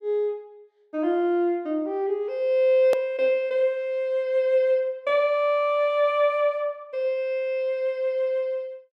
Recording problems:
hard cut with a click; at 3 s

